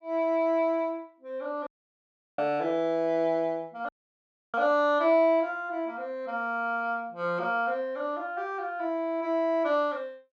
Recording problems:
dropout; at 1.5 s for 0.5 s and at 4 s for 0.5 s

